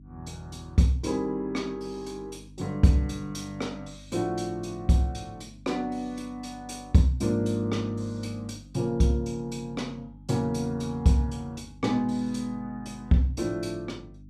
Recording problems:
hum; 50 Hz, harmonics up to 300 Hz, SNR 21 dB

